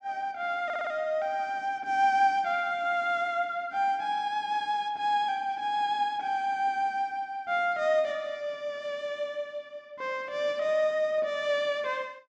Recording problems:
audio stuttering; at 0.5 s

